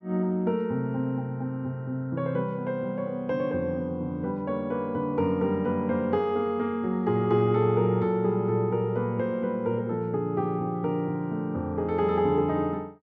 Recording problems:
none

